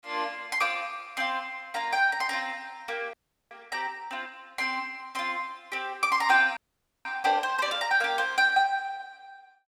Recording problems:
frozen audio; at 3 s and at 6.5 s

